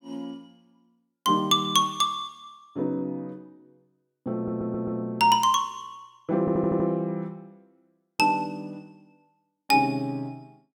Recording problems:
audio stuttering; at 4.5 s and at 6.5 s

